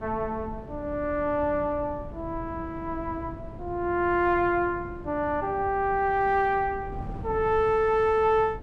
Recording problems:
wind on the microphone; below 220 Hz, SNR 15 dB

